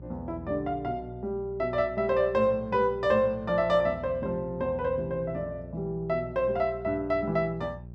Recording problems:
hum; 60 Hz, harmonics up to 600 Hz, SNR 16 dB

